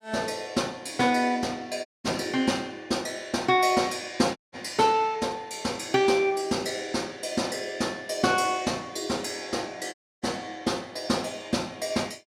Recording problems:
audio cutting out; at 2 s, at 4.5 s and at 10 s

